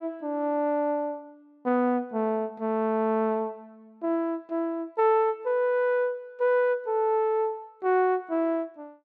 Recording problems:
none

